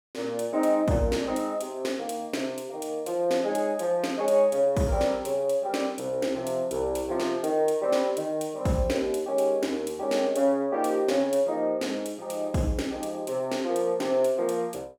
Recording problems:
none

